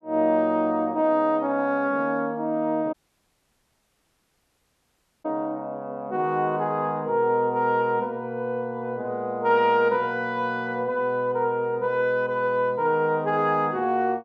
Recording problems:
audio cutting out; at 3 s for 2.5 s

